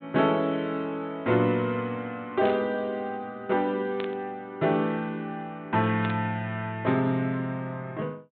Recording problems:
treble missing; nothing above 4 kHz
static burst; at 2.5 s, at 4 s and at 6 s; peak -5 dB vs average level

